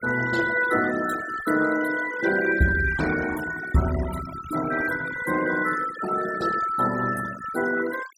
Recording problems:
noise reduction artefacts; signal-to-artefact ratio 12 dB

